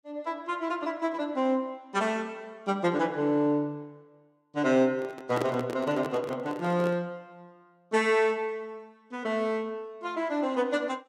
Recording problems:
microphone handling noise; from 5 to 7 s; peak +2 dB vs average level

